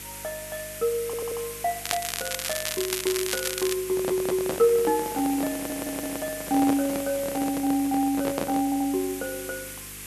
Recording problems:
hum; 50 Hz, harmonics up to 500 Hz, SNR 21 dB
hiss; SNR 9 dB
stutter; 4 times, first at 1 s
crackle; from 2 to 4 s; loose cable, SNR 3 dB
handling noise; from 4 to 9 s; peak +2 dB vs average level

